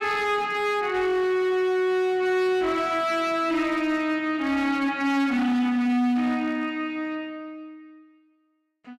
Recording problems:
distortion; hard clipping, signal-to-distortion ratio 12 dB

